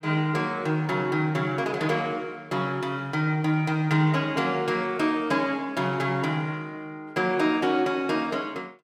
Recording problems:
none

